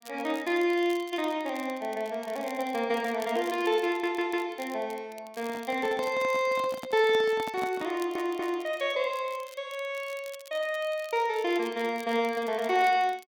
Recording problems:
crackle; vinyl, SNR 22 dB
audio stuttering; at 4 s and at 8 s
handling noise; from 5.5 to 8.5 s; peak -5 dB vs average level

